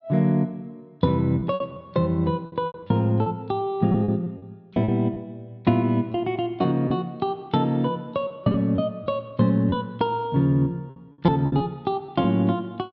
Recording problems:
treble cut off; nothing above 7.1 kHz
lost packets; 7% of the sound replaced, filled with repeated pitch periods

